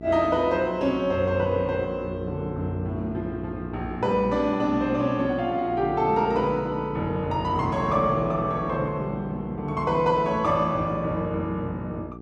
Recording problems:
electrical hum; 60 Hz, harmonics up to 900 Hz, SNR 12 dB

